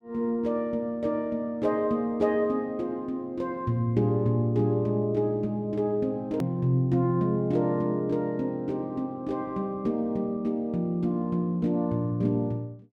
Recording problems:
hard cut with a click; at 6.5 s

